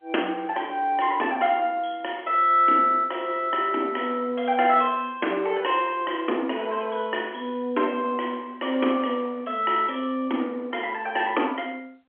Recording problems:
phone line; 220 Hz to 3.4 kHz, G.711

